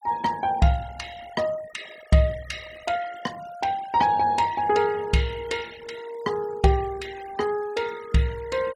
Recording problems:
denoising artefacts; signal-to-artefact ratio 20 dB

